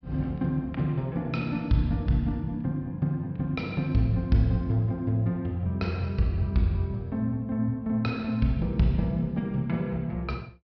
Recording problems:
treble missing; nothing above 5.5 kHz

